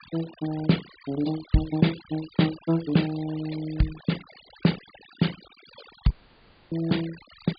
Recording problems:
treble cut off; nothing above 4.7 kHz
denoising artefacts; signal-to-artefact ratio 17 dB
dropout; at 6 s for 0.5 s

